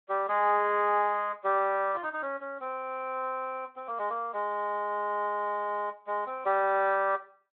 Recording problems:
phone line; 280 Hz to 3.5 kHz, Speex

